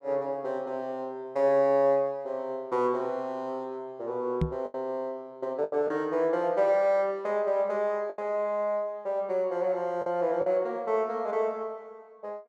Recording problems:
lost packets; 3% of the sound replaced, filled with the last packet
knock on the microphone; at 4.5 s; peak +4 dB vs average level

